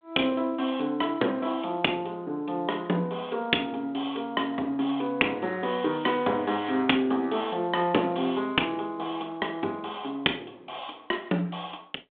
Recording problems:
telephone audio; 220 Hz to 3.5 kHz, G.726

